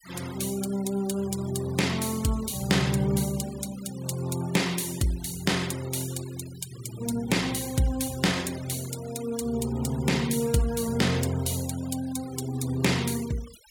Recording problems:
denoising artefacts; signal-to-artefact ratio 16 dB

